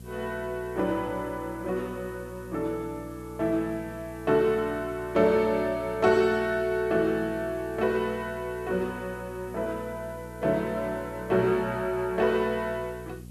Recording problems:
hum; 60 Hz, harmonics up to 540 Hz, SNR 16 dB
background hiss; slope -1 dB per octave, SNR 27 dB

